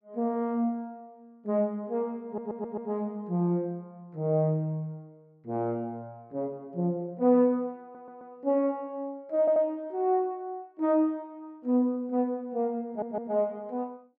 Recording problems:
stutter; 4 times, first at 2.5 s

